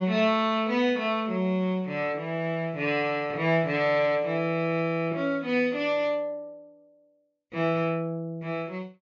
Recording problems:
low-pass filter; nothing above 7.2 kHz

